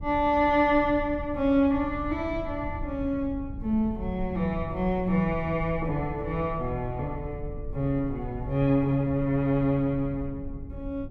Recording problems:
low-frequency rumble; below 100 Hz, SNR 12 dB

